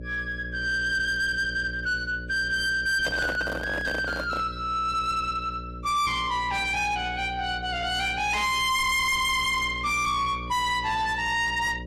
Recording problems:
lossy compression; AAC, log-spectral distance 2 dB, nothing above 13.8 kHz
distortion; soft clipping, signal-to-distortion ratio 8 dB
hum; 60 Hz, harmonics up to 600 Hz, SNR 14 dB
microphone handling noise; from 3 to 4.5 s; peak -2 dB vs average level

